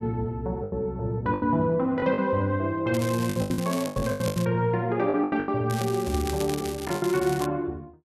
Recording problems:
packet loss; 12% of the sound replaced, filled with the last packet
crackling; from 3 to 4.5 s and from 5.5 to 7.5 s; loose cable, SNR 13 dB
microphone thump; at 4 s; peak -4 dB vs average level

